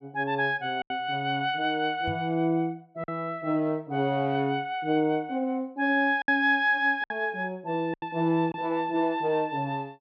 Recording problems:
packet loss; 3% of the sound replaced, filled with silence
microphone thump; at 2 s; peak -4 dB vs average level

